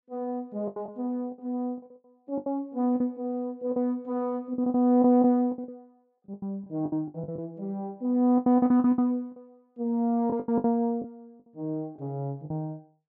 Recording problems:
packet loss; 13% of the sound replaced, filled with the last packet

